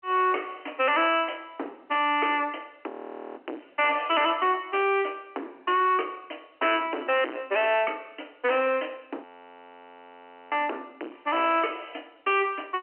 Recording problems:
phone line; 240 Hz to 3.1 kHz, G.711
distortion; hard clipping, uneven, signal-to-distortion ratio 4 dB
audio freezing; at 3 s and at 9 s for 1.5 s

